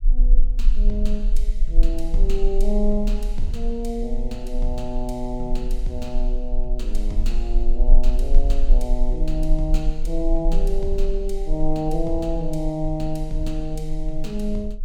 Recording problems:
low-frequency rumble; below 32 Hz, strongest tone 20 Hz, SNR -2 dB

